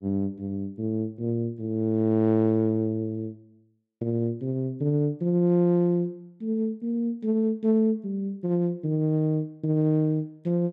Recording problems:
none

